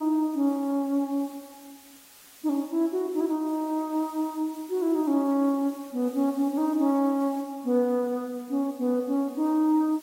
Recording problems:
lossy codec; AAC, log-spectral distance 3 dB, nothing above 13.5 kHz
background hiss; slope 0 dB per octave, SNR 24 dB

